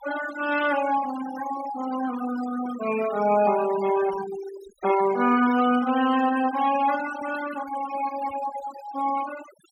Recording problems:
denoising artefacts; signal-to-artefact ratio 12 dB

